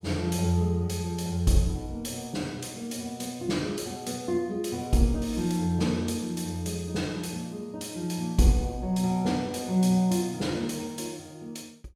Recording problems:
none

